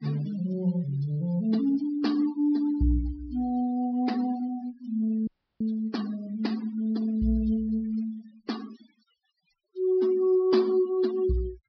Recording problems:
treble cut off; nothing above 5.5 kHz
noise reduction artefacts; signal-to-artefact ratio 19 dB
dropout; at 5.5 s

